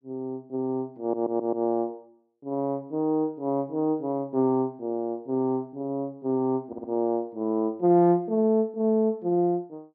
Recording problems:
stutter; at 1 s and at 6.5 s

